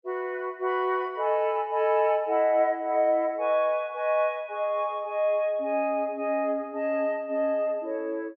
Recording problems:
none

